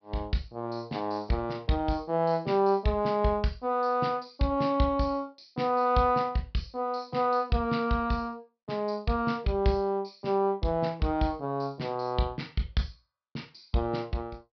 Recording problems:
low-pass filter; nothing above 5.5 kHz

